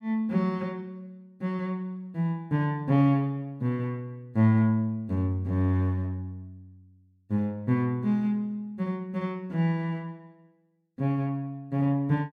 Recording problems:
none

